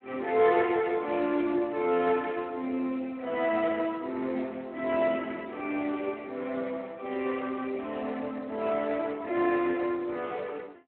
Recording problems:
phone line; 280 Hz to 3.5 kHz, Speex

